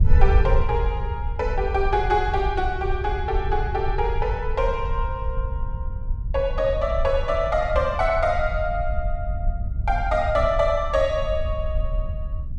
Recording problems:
wind on the microphone; below 68 Hz, SNR 4 dB

